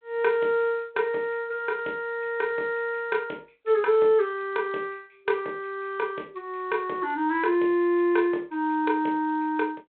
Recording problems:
telephone audio; 300 Hz to 3.7 kHz, G.726

